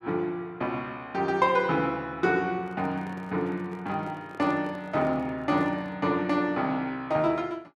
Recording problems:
microphone handling noise; from 2.5 to 6 s; peak -11 dB vs average level

